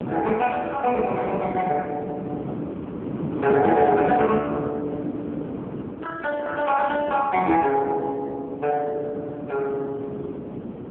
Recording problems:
telephone audio; 240 Hz to 2.9 kHz, AMR-NB
wind on the microphone; below 430 Hz, SNR 8 dB

